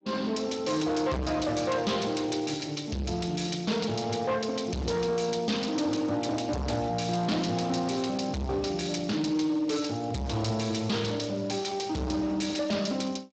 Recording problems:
lossy compression; Speex, log-spectral distance 6 dB, nothing above 7.3 kHz
distortion; hard clipping, signal-to-distortion ratio 6 dB

